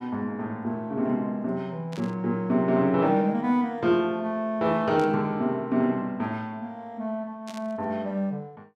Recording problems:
burst of static; at 2 s, at 5 s and at 7.5 s; peak -12 dB vs average level

